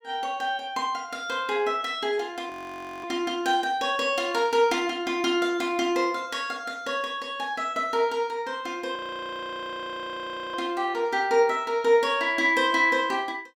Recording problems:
audio freezing; at 2.5 s for 0.5 s and at 9 s for 1.5 s

